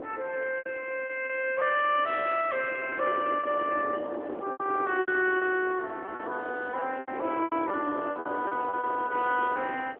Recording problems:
telephone audio; 260 Hz to 3.3 kHz, AMR-NB
wind noise; below 680 Hz, SNR 10 dB
packet loss; 11% of the sound replaced, filled with repeated pitch periods

